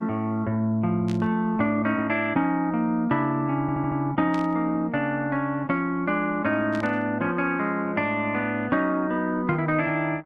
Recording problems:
lossy codec; Opus, log-spectral distance 2 dB
burst of static; at 1 s, at 4.5 s and at 6.5 s; peak -11 dB vs average level
audio stuttering; at 3.5 s

